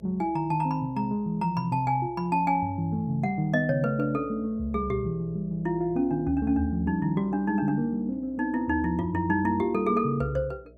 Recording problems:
hum; 60 Hz, harmonics up to 660 Hz, SNR 25 dB

